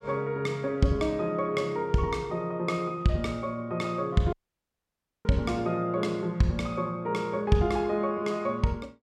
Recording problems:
dropout; at 4.5 s for 1 s

